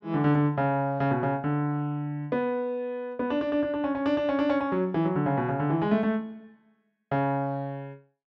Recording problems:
none

